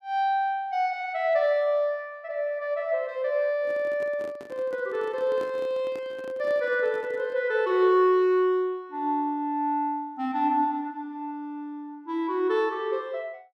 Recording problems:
microphone handling noise; from 3.5 to 7.5 s; peak -10 dB vs average level

